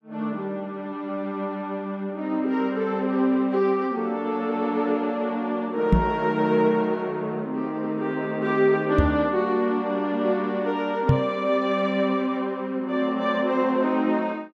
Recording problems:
microphone thump; at 6 s, at 9 s and at 11 s; peak +10 dB vs average level

